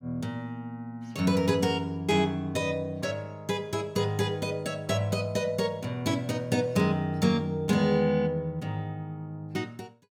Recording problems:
none

